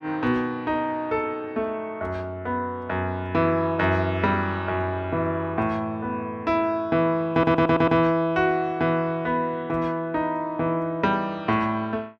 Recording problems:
stutter; at 7.5 s

